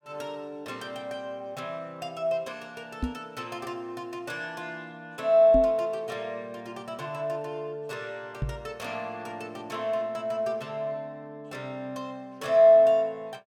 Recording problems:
microphone thump; at 3 s, at 5.5 s and at 8.5 s; peak +2 dB vs average level

